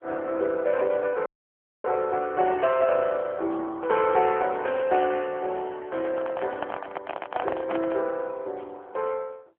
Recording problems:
phone line; 300 Hz to 2.6 kHz, AMR-NB
audio cutting out; at 1.5 s for 0.5 s
microphone handling noise; from 6 to 8 s; peak +3 dB vs average level

